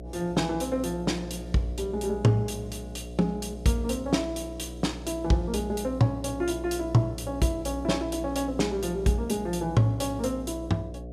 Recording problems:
hum; 60 Hz, harmonics up to 720 Hz, SNR 11 dB

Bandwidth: 14.5 kHz